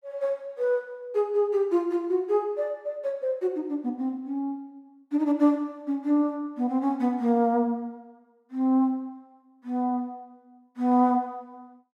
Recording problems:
none

